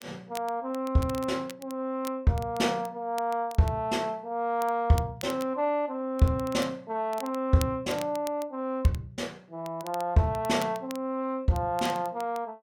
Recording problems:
crackle; vinyl, SNR 18 dB

